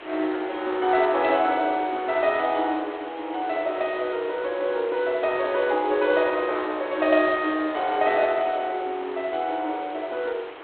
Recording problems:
telephone audio; 280 Hz to 3.8 kHz, G.726
background hiss; SNR 17 dB
wind noise; below 1.6 kHz, SNR 23 dB

